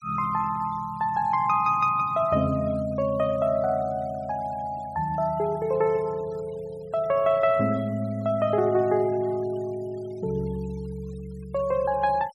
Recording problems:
denoising artefacts; signal-to-artefact ratio 26 dB

